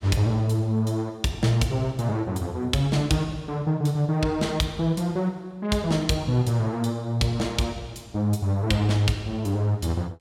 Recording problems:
none

